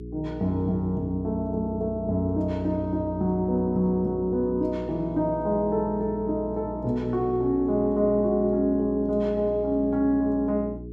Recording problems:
hum; 60 Hz, harmonics up to 420 Hz, SNR 12 dB

